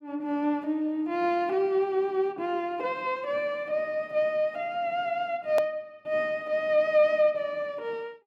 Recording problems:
edit click; at 5.5 s

